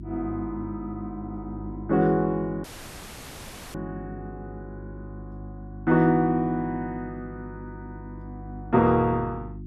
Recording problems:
electrical hum; 50 Hz, harmonics up to 350 Hz, SNR 14 dB
dropout; at 2.5 s for 1 s

